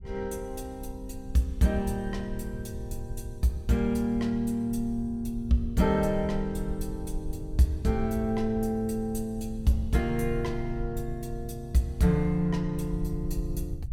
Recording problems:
rumble; below 74 Hz, SNR 11 dB

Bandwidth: 17 kHz